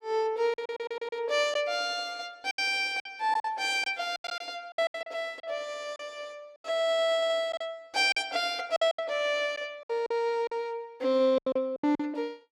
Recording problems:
packet loss; 10% of the sound replaced, filled with silence
audio stuttering; at 0.5 s and at 7 s

